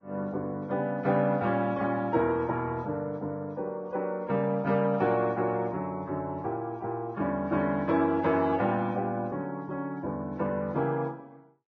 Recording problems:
codec artefacts; Vorbis, log-spectral distance 2 dB, nothing above 6.2 kHz

